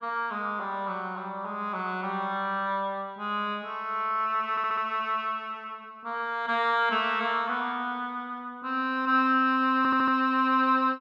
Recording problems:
stutter; at 4.5 s and at 10 s

